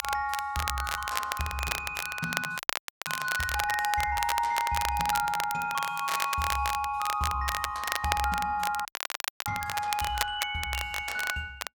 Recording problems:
crackling; vinyl, SNR 4 dB
audio freezing; at 2.5 s and at 9 s for 0.5 s

